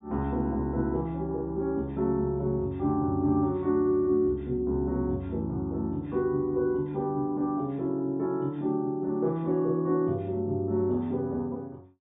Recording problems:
treble missing; nothing above 4 kHz

